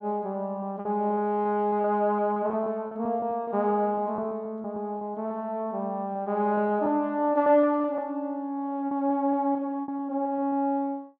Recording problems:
lost packets; 8% of the sound replaced, filled with repeated pitch periods

